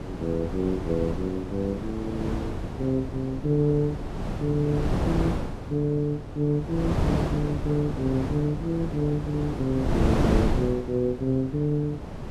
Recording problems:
wind on the microphone; below 410 Hz, SNR 3 dB

